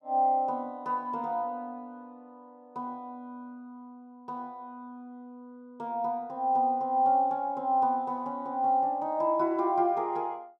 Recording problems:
none

